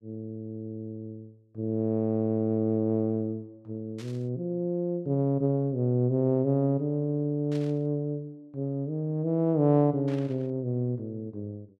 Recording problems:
burst of static; at 4 s, at 7.5 s and at 10 s; peak -14 dB vs average level

